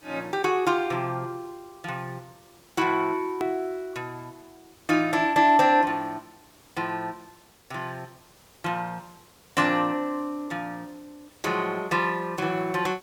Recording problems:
hiss; slope -3 dB per octave, SNR 28 dB
hard cut with a click; at 3.5 s

